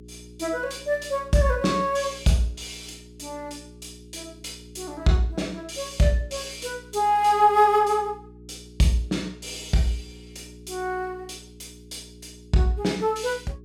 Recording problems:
hum; 60 Hz, harmonics up to 420 Hz, SNR 22 dB

